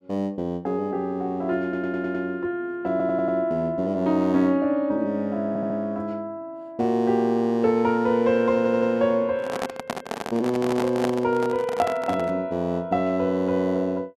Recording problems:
audio stuttering; 4 times, first at 1.5 s
handling noise; from 9.5 to 12 s; peak 0 dB vs average level

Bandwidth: 13 kHz